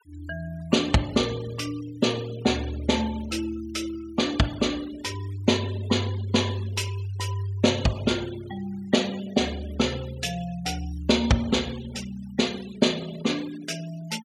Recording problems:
noise reduction artefacts; signal-to-artefact ratio 17 dB

